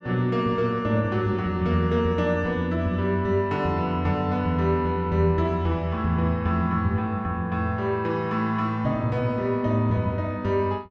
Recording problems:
none

